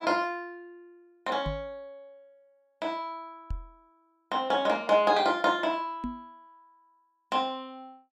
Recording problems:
microphone thump; at 1.5 s, at 3.5 s and at 6 s; peak -2 dB vs average level

